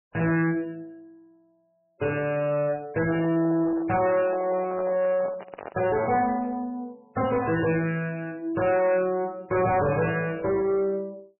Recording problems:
codec artefacts; MP3, log-spectral distance 3 dB, nothing above 2.8 kHz
distortion; soft clipping, signal-to-distortion ratio 10 dB
microphone handling noise; from 3 to 6.5 s; peak -6 dB vs average level

